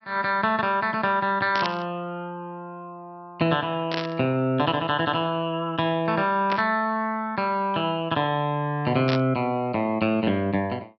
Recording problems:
low-pass filter; nothing above 5.7 kHz
static burst; 4 times, first at 1.5 s; peak -1 dB vs average level

